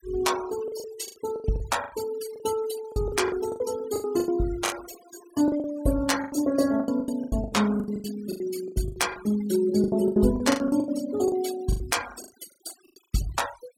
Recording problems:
denoising artefacts; signal-to-artefact ratio 15 dB
packet loss; 18% of the sound replaced, filled with the last packet

